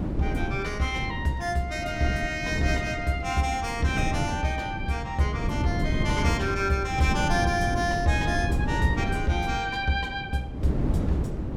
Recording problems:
hum; 60 Hz, harmonics up to 720 Hz, SNR 21 dB
wind noise; below 270 Hz, SNR 3 dB

